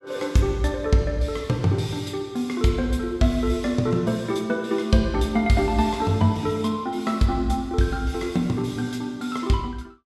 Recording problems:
none

